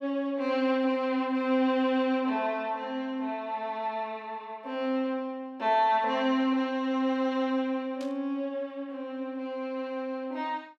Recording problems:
static burst; at 8 s; peak -13 dB vs average level

